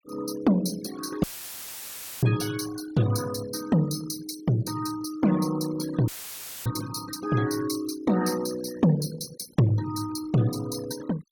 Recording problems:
denoising artefacts; signal-to-artefact ratio 15 dB
dropout; at 1 s for 1 s and at 6 s for 0.5 s; filled with static

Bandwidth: 17 kHz